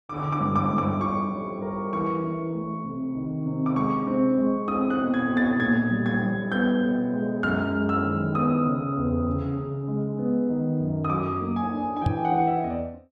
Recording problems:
microphone bump; at 12 s; peak +4 dB vs average level

